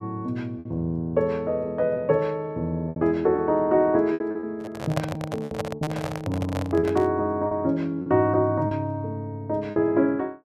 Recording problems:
lost packets; 7% of the sound replaced, filled with repeated pitch periods
microphone handling noise; from 4.5 to 7 s; peak +2 dB vs average level

